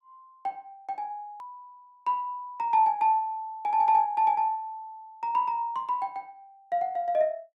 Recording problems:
hard cut with a click; at 1.5 s

